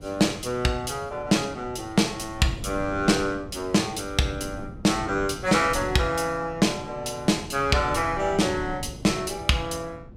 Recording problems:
wind on the microphone; below 220 Hz, SNR 15 dB

